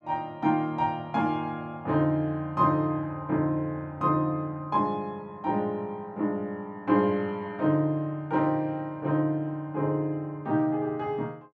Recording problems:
none

